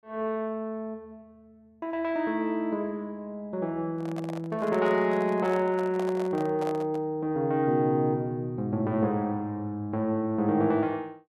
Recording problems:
microphone handling noise; from 4 to 7 s; peak -5 dB vs average level

